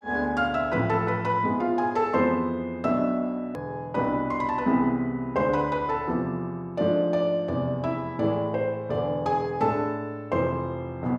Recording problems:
edit click; at 3.5 s

